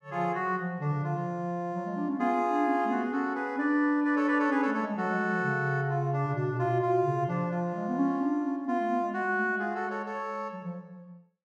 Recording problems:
none

